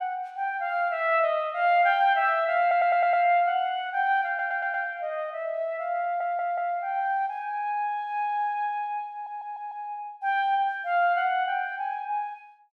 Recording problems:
audio stuttering; 4 times, first at 2.5 s

